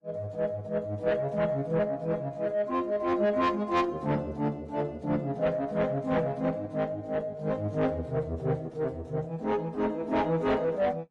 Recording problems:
codec artefacts; AAC, then AAC, log-spectral distance 2 dB, nothing above 11 kHz
distorted audio; soft clipping, signal-to-distortion ratio 11 dB

